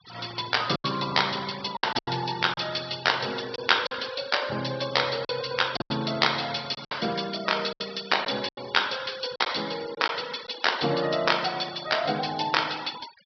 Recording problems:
treble cut off; nothing above 5.5 kHz
denoising artefacts; signal-to-artefact ratio 16 dB
lost packets; 6% of the sound replaced, filled with silence

